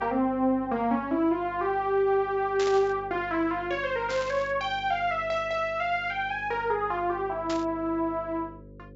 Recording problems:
treble missing; nothing above 8 kHz
electrical hum; 50 Hz, harmonics up to 550 Hz, SNR 20 dB
burst of static; at 2.5 s, at 4 s and at 7.5 s; peak -5 dB vs average level

